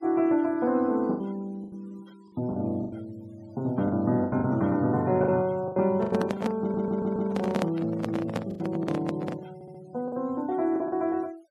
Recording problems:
noise reduction artefacts; signal-to-artefact ratio 27 dB
lost packets; 8% of the sound replaced, filled with the last packet
microphone handling noise; from 6 to 9.5 s; peak +3 dB vs average level
stutter; at 6.5 s and at 9.5 s

